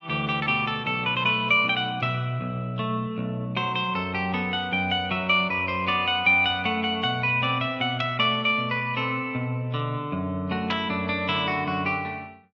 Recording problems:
treble missing; nothing above 8 kHz
codec artefacts; AAC, log-spectral distance 2 dB

